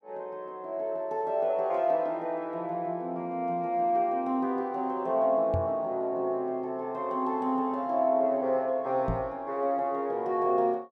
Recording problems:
microphone bump; at 5.5 s and at 9 s; peak +1 dB vs average level

